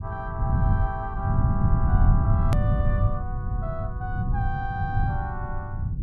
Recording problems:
rumble; below 120 Hz, SNR -8 dB
hard cut with a click; at 2.5 s

